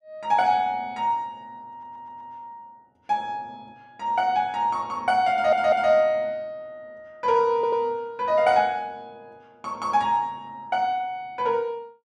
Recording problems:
audio stuttering; at 1.5 s, at 5.5 s and at 7.5 s

